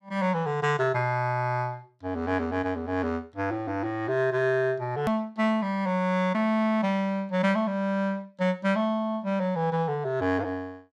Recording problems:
hard cut with a click; at 5 s

